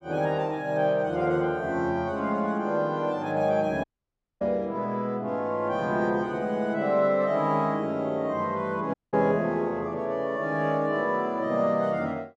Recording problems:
audio cutting out; at 4 s for 0.5 s and at 9 s

